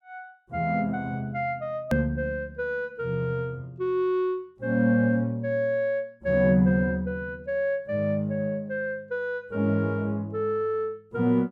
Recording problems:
edit click; at 2 s

